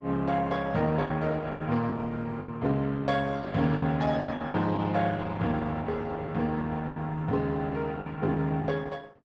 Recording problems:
lossy codec; Opus, log-spectral distance 3 dB, nothing above 7.8 kHz
lost packets; 9% of the sound replaced, filled with the last packet

